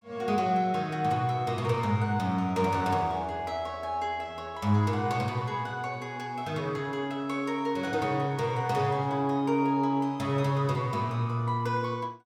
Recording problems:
none

